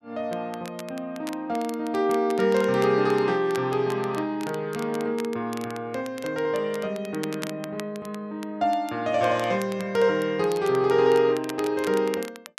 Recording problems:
crackle; vinyl, SNR 18 dB

